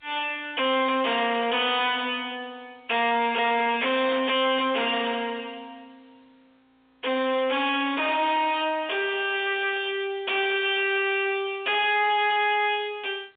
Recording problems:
phone line; 280 Hz to 3.6 kHz, G.711
distorted audio; soft clipping, signal-to-distortion ratio 6 dB

